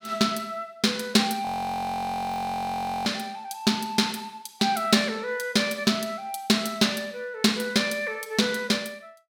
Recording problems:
frozen audio; at 1.5 s for 1.5 s

